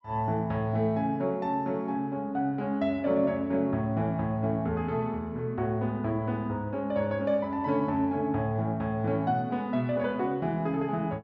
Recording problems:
none

